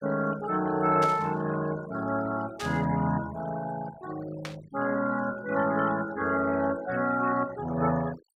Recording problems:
noise reduction artefacts; signal-to-artefact ratio 16 dB
burst of static; at 1 s, at 2.5 s and at 4.5 s; peak -5 dB vs average level

